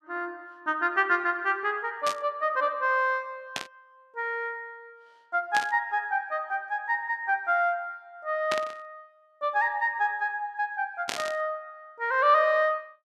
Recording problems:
burst of static; 5 times, first at 2 s; peak 0 dB vs average level

